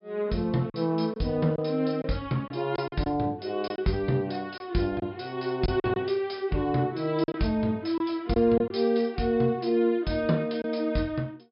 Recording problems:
treble missing; nothing above 5.5 kHz
lost packets; 5% of the sound replaced, filled with silence

